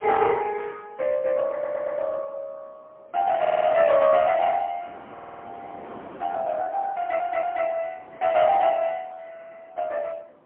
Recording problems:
telephone audio; 300 Hz to 2.1 kHz, AMR-NB, then MP3
wind on the microphone; below 1.1 kHz, SNR 23 dB
stutter; 4 times, first at 1.5 s

